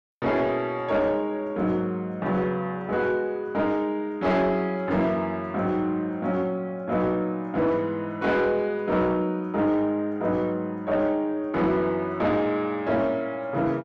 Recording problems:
distortion; soft clipping, signal-to-distortion ratio 11 dB

